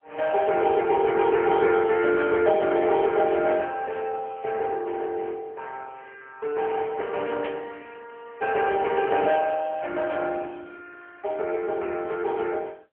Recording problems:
phone line; 320 Hz to 3.2 kHz, AMR-NB
static burst; at 7.5 s; peak -8 dB vs average level

